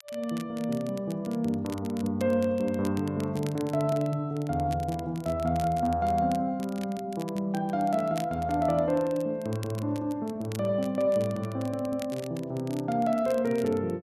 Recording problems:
crackling; vinyl, SNR 20 dB

